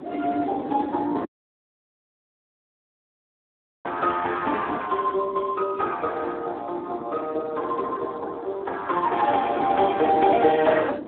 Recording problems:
telephone audio; 260 Hz to 3.8 kHz, Speex
wind noise; below 480 Hz, SNR 10 dB
dropout; at 1.5 s for 2.5 s

